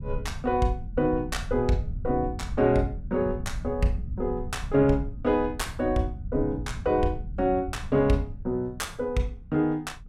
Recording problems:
low-frequency rumble; below 100 Hz, SNR 10 dB

